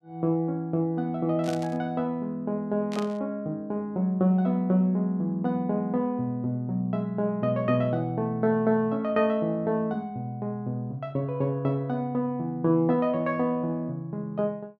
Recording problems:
static burst; at 1.5 s and at 3 s; peak -8 dB vs average level

